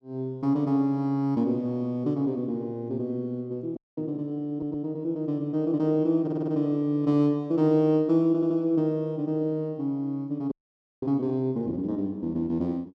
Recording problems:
audio freezing; at 4 s and at 11 s for 0.5 s
stutter; at 4.5 s, at 6 s and at 8.5 s

